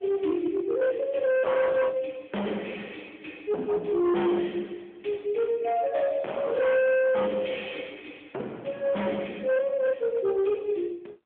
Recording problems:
phone line; 240 Hz to 3.3 kHz, AMR-NB
distorted audio; hard clipping, uneven, signal-to-distortion ratio 6 dB

